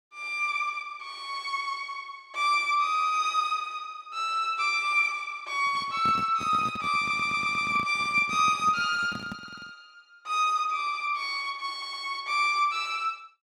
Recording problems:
handling noise; from 5.5 to 9.5 s; peak -7 dB vs average level
stutter; at 7 s, at 9.5 s and at 12 s

